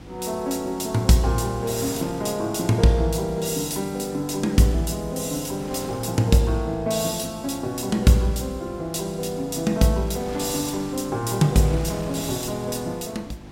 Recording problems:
hum; 50 Hz, harmonics up to 350 Hz, SNR 21 dB
wind on the microphone; below 1.6 kHz, SNR 19 dB

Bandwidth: 16 kHz